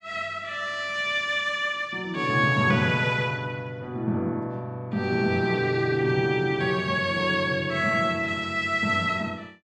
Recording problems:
none

